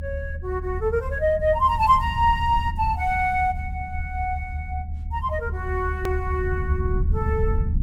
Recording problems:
low-frequency rumble; below 78 Hz, SNR 5 dB
edit click; at 6 s

